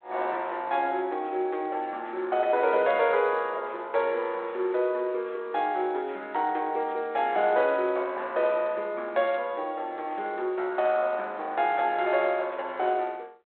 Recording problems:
phone line; 320 Hz to 3.7 kHz, G.726

